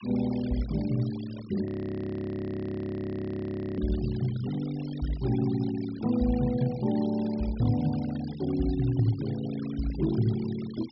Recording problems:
treble missing; nothing above 5.5 kHz
noise reduction artefacts; signal-to-artefact ratio 18 dB
frozen audio; at 1.5 s for 2 s

